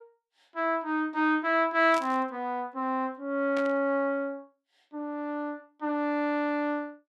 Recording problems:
burst of static; at 2 s and at 3.5 s; peak -7 dB vs average level

